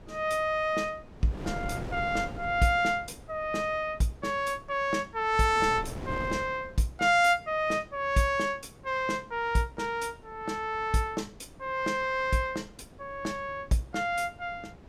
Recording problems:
wind on the microphone; below 450 Hz, SNR 16 dB

